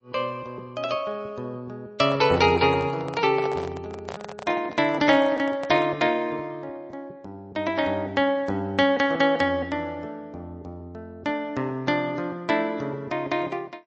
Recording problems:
lossy codec; MP3, log-spectral distance 2 dB
microphone handling noise; from 2 to 6 s; peak -5 dB vs average level

